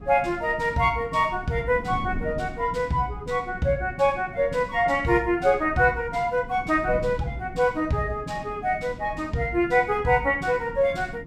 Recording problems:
wind on the microphone; below 230 Hz, SNR 16 dB

